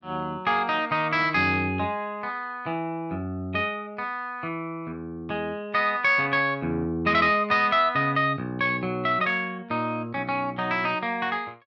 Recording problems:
none

